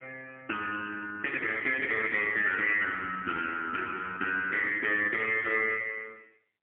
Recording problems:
telephone audio; 370 Hz to 3.1 kHz, AMR-NB, then MP3

